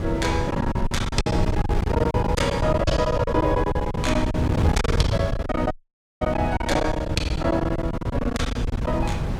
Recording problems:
wind noise; below 170 Hz, SNR 1 dB
lost packets; 19% of the sound replaced, filled with silence
dropout; at 5.5 s for 0.5 s

